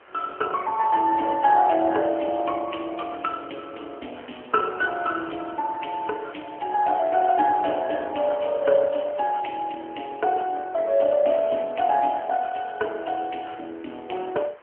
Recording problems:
phone line; 300 Hz to 3.2 kHz, AMR-NB
hiss; SNR 25 dB

